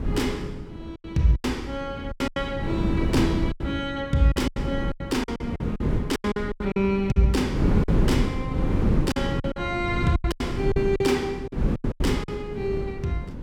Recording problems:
wind noise; below 250 Hz, SNR 2 dB
packet loss; 12% of the sound replaced, filled with silence

